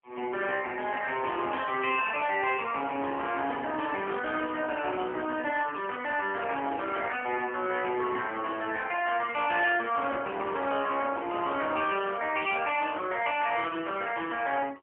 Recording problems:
phone line; 280 Hz to 3.3 kHz, AMR-NB, then MP3
distorted audio; hard clipping, uneven, signal-to-distortion ratio 12 dB

